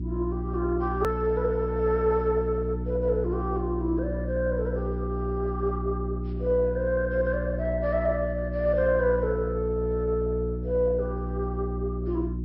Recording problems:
lossy codec; MP2, log-spectral distance 2 dB
electrical hum; 60 Hz, harmonics up to 360 Hz, SNR 4 dB
edit click; at 1 s

